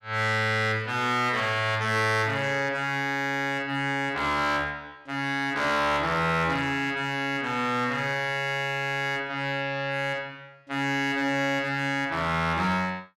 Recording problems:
distorted audio; hard clipping, uneven, signal-to-distortion ratio 12 dB

